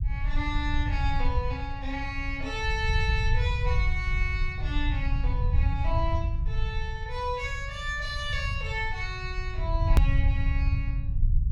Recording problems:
rumble; below 84 Hz, SNR -3 dB
click at an edit; at 10 s

